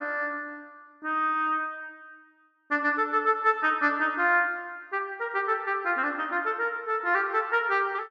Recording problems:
none

